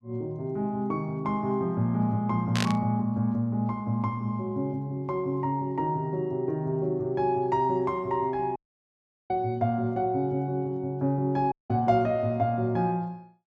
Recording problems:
burst of static; at 2.5 s; peak +1 dB vs average level
dropout; at 8.5 s for 0.5 s and at 12 s

